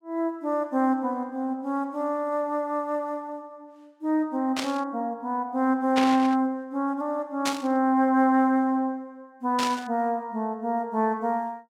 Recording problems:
burst of static; 4 times, first at 4.5 s; peak +2 dB vs average level

